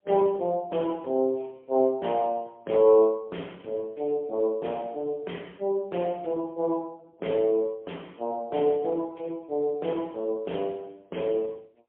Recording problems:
telephone audio; 240 Hz to 3.4 kHz, AMR-NB, then MP3

